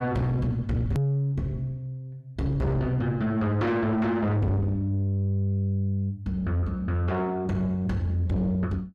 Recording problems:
distorted audio; soft clipping, signal-to-distortion ratio 6 dB
hard cut with a click; at 1 s

